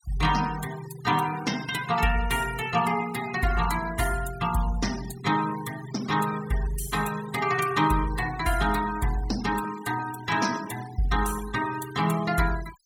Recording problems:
denoising artefacts; signal-to-artefact ratio 14 dB

